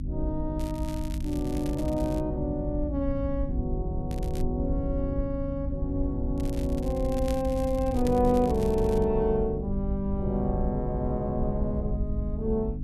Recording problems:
hum; 50 Hz, harmonics up to 300 Hz, SNR 7 dB
low-frequency rumble; below 66 Hz, SNR 5 dB
crackling; from 0.5 to 2 s, at 4 s and from 6.5 to 9 s; loose cable, SNR 18 dB

